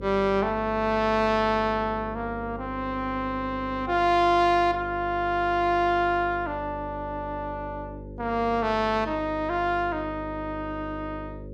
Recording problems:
electrical hum; 50 Hz, harmonics up to 550 Hz, SNR 14 dB

